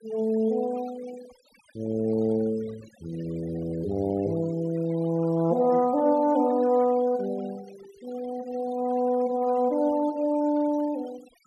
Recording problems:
noise reduction artefacts; signal-to-artefact ratio 23 dB

